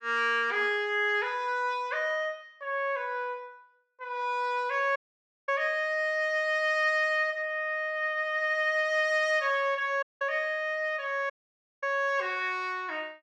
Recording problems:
audio cutting out; at 5 s for 0.5 s, at 10 s and at 11 s for 0.5 s

